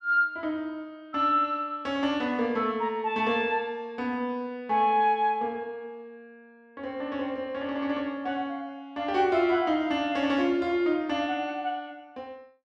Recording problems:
none

